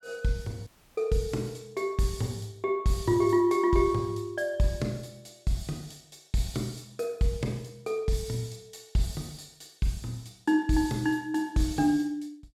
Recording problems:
dropout; at 0.5 s

